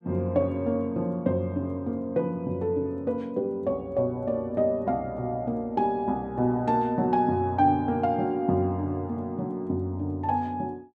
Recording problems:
none

